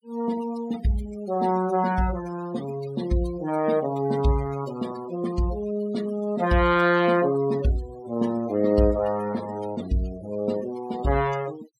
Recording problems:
denoising artefacts; signal-to-artefact ratio 17 dB

